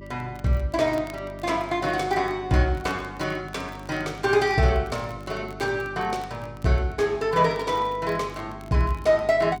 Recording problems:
hum; 50 Hz, harmonics up to 400 Hz, SNR 17 dB
crackle; vinyl, SNR 28 dB

